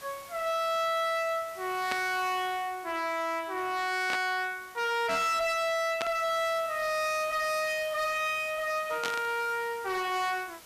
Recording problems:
distortion; hard clipping, uneven, signal-to-distortion ratio 8 dB
hiss; slope -1 dB per octave, SNR 19 dB
static burst; 4 times, first at 2 s; peak 0 dB vs average level

